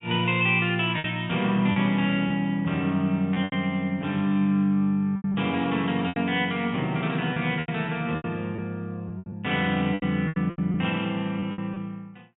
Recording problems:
treble cut off; nothing above 4 kHz
lost packets; 9% of the sound replaced, filled with repeated pitch periods

